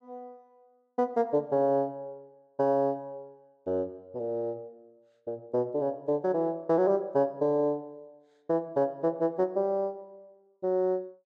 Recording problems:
none

